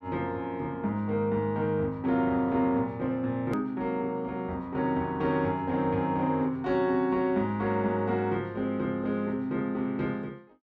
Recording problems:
edit click; at 3.5 s

